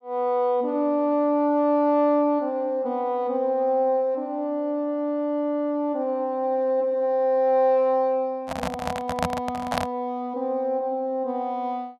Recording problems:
microphone handling noise; from 8.5 to 10 s; peak +2 dB vs average level

